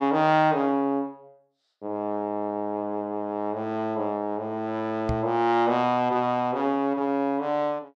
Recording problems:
microphone thump; at 5 s; peak 0 dB vs average level

